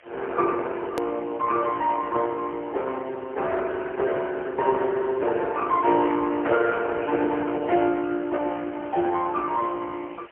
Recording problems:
phone line; 300 Hz to 2.1 kHz, AMR-NB, then MP3
hiss; SNR 26 dB
edit click; at 1 s

